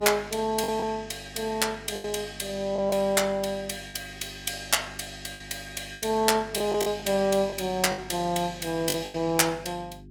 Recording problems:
electrical hum; 50 Hz, harmonics up to 400 Hz, SNR 20 dB
packet loss; 7% of the sound replaced, filled with the last packet

